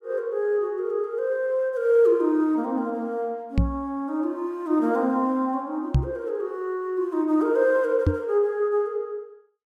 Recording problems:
microphone thump; at 3.5 s, at 6 s and at 8 s; peak +7 dB vs average level

